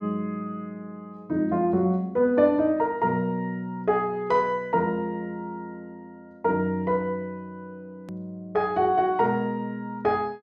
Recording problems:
click at an edit; at 8 s

